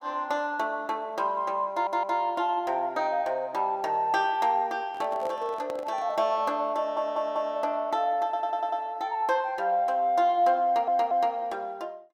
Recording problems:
audio stuttering; 4 times, first at 1.5 s
handling noise; from 5 to 6 s; peak -9 dB vs average level

